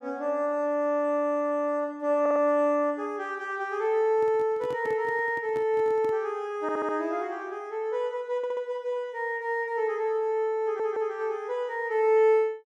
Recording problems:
audio stuttering; 4 times, first at 2 s
microphone handling noise; from 4 to 6 s; peak -10 dB vs average level

